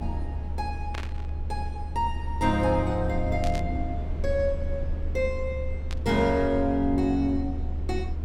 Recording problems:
low-frequency rumble; below 74 Hz, SNR 5 dB
burst of static; at 1 s, at 3.5 s and at 6 s; peak -5 dB vs average level

